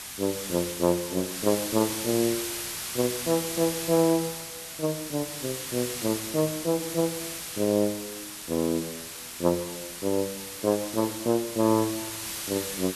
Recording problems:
hiss; slope +1 dB per octave, SNR 6 dB

